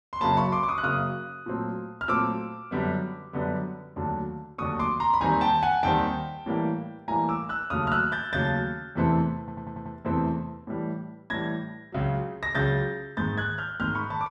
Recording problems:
audio stuttering; at 9.5 s

